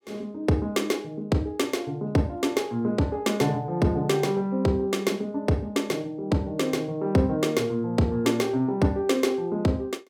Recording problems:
none

